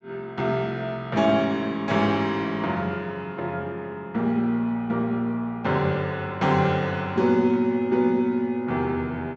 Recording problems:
low-pass filter; nothing above 8 kHz

